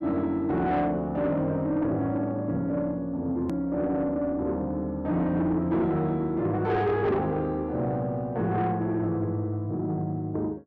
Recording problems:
distortion; soft clipping, signal-to-distortion ratio 12 dB
edit click; at 3.5 s

